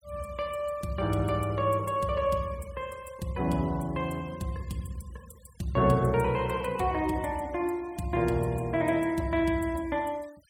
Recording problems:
noise reduction artefacts; signal-to-artefact ratio 25 dB

